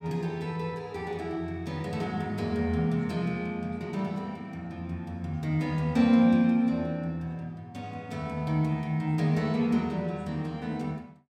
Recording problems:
none

